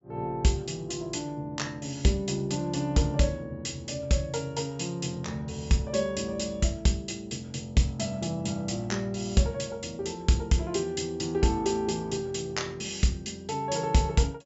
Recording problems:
low-pass filter; nothing above 8 kHz

